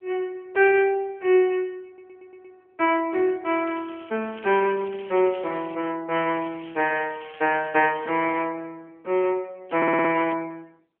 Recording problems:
phone line; 240 Hz to 3.4 kHz, AMR-NB
audio stuttering; at 2 s and at 10 s
crackling; from 3.5 to 5.5 s, from 6.5 to 8.5 s and at 9.5 s; loose cable, SNR 22 dB

